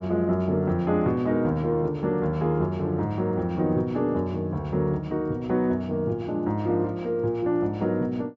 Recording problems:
low-pass filter; nothing above 8 kHz

